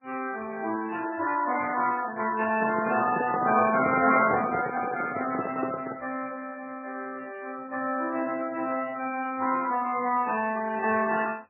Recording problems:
lossy compression; Speex, then MP3, log-spectral distance 5 dB, nothing above 2.4 kHz
microphone handling noise; from 2.5 to 6 s; peak +1 dB vs average level

